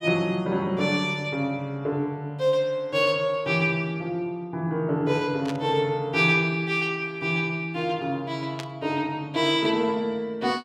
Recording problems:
static burst; at 5.5 s and at 8.5 s; peak -6 dB vs average level

